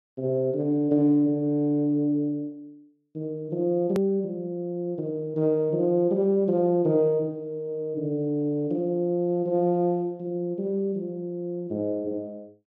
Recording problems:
edit click; at 4 s

